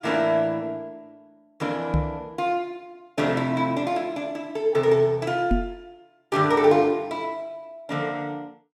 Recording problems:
microphone bump; at 2 s and at 5.5 s; peak +4 dB vs average level

